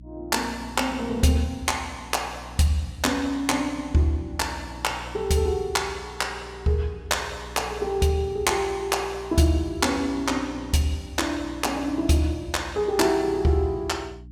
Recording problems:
hum; 60 Hz, harmonics up to 300 Hz, SNR 18 dB

